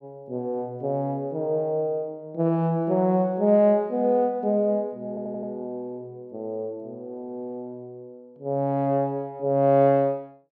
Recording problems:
audio stuttering; at 5 s

